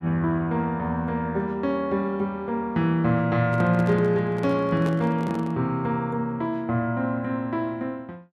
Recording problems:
handling noise; from 3.5 to 5.5 s; peak -5 dB vs average level

